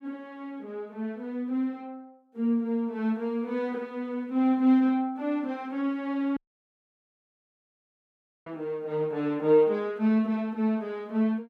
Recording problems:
dropout; at 6.5 s for 2 s

